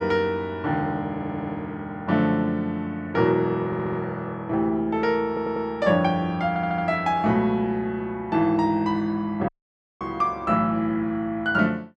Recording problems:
stutter; 4 times, first at 1 s
dropout; at 9.5 s for 0.5 s

